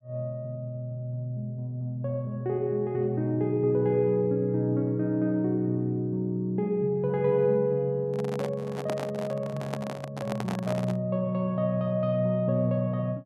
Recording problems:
handling noise; from 8 to 11 s; peak -1 dB vs average level

